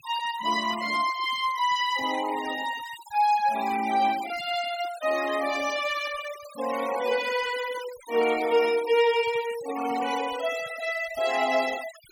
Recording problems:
denoising artefacts; signal-to-artefact ratio 14 dB

